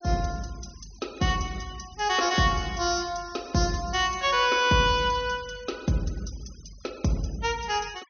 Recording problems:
treble cut off; nothing above 6.4 kHz
denoising artefacts; signal-to-artefact ratio 24 dB

